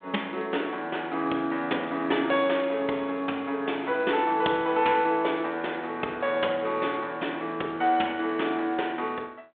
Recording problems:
telephone audio; 240 Hz to 3.6 kHz, G.726

